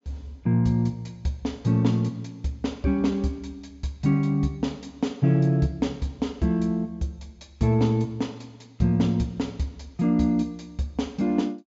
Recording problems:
low-pass filter; nothing above 8 kHz

